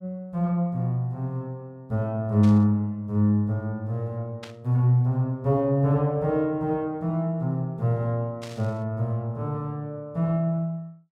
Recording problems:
burst of static; at 2.5 s, at 4.5 s and at 8.5 s; peak -11 dB vs average level

